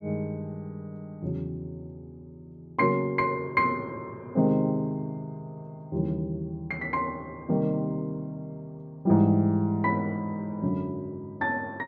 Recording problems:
none

